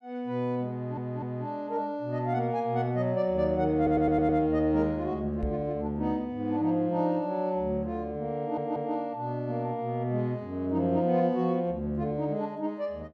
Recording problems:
audio stuttering; at 0.5 s, at 4 s and at 8.5 s
microphone thump; at 5.5 s; peak 0 dB vs average level

